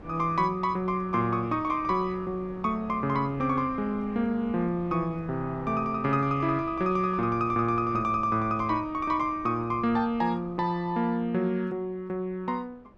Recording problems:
wind on the microphone; below 500 Hz, SNR 19 dB

